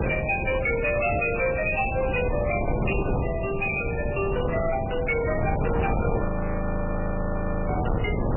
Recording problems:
lossy compression; MP3, log-spectral distance 6 dB, nothing above 2.5 kHz
distorted audio; hard clipping, signal-to-distortion ratio 10 dB
wind on the microphone; below 460 Hz, SNR 2 dB
audio freezing; at 6.5 s for 1.5 s

